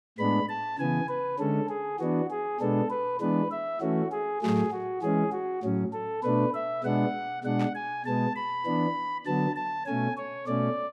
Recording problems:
burst of static; at 4.5 s and at 7.5 s; peak -8 dB vs average level

